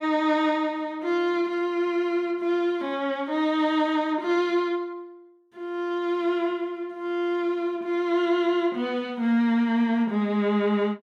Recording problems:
none

